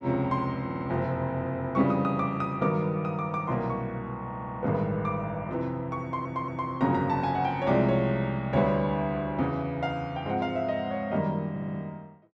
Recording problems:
audio stuttering; 4 times, first at 0.5 s

